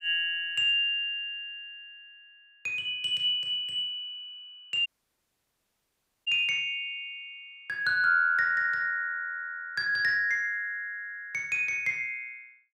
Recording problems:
audio cutting out; at 5 s for 1.5 s

